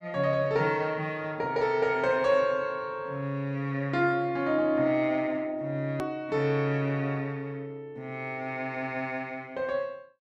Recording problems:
click at an edit; at 6 s

